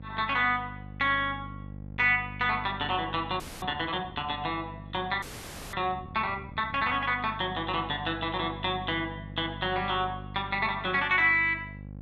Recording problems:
electrical hum; 50 Hz, harmonics up to 600 Hz, SNR 15 dB
audio freezing; at 3.5 s and at 5 s for 0.5 s

